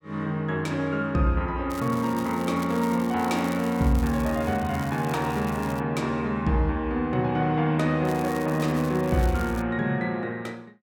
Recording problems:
crackle; from 1.5 to 6 s and from 8 to 9.5 s; loose cable, SNR 19 dB

